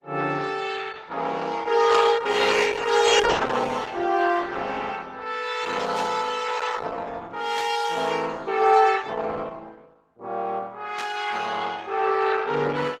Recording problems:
codec artefacts; Opus, log-spectral distance 6 dB, nothing above 15.5 kHz
burst of static; 4 times, first at 2 s; peak -6 dB vs average level

